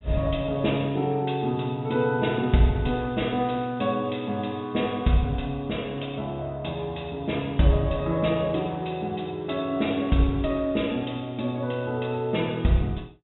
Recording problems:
treble cut off; nothing above 3.7 kHz

